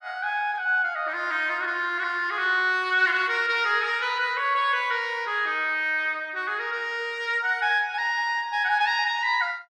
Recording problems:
none

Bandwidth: 12.5 kHz